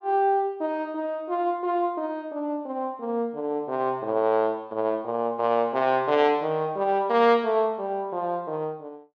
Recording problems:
none

